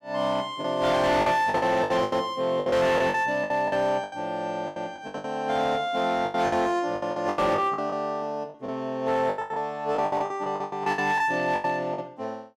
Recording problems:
distortion; hard clipping, signal-to-distortion ratio 12 dB
packet loss; 16% of the sound replaced, filled with the last packet

